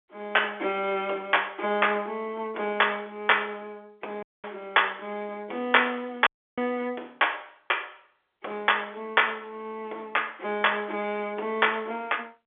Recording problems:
phone line; 280 Hz to 3.5 kHz, G.711
audio cutting out; at 4 s and at 6.5 s

